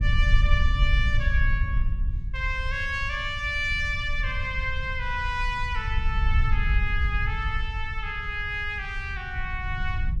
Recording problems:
rumble; below 68 Hz, SNR 0 dB

